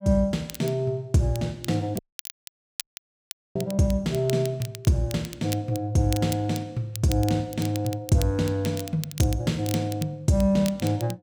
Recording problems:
crackling; vinyl, SNR 14 dB
audio cutting out; at 2 s for 1.5 s

